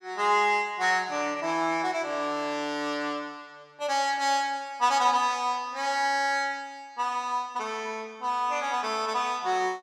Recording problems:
none

